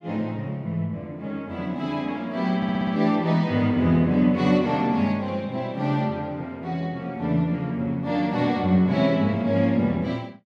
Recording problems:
stutter; at 2.5 s

